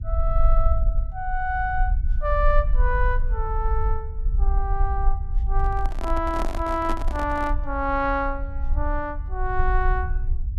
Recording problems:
rumble; below 50 Hz, strongest tone 22 Hz, SNR -1 dB
handling noise; from 5.5 to 7.5 s; peak -1 dB vs average level

